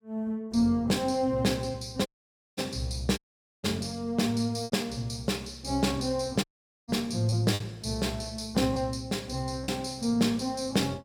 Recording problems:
lost packets; 3% of the sound replaced, filled with repeated pitch periods
dropout; at 2 s for 0.5 s, at 3 s and at 6.5 s

